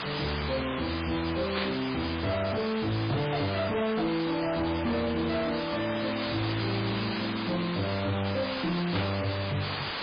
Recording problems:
lossy codec; MP3, log-spectral distance 18 dB, nothing above 5 kHz
distorted audio; hard clipping, signal-to-distortion ratio 9 dB
hiss; SNR 5 dB
burst of static; at 1.5 s and at 9 s; peak +1 dB vs average level

